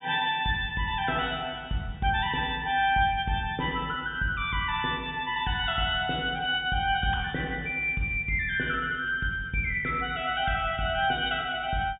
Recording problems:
treble missing; nothing above 3.7 kHz

